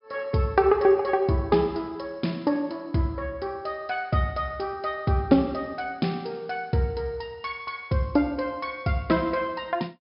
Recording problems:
low-pass filter; nothing above 5.5 kHz

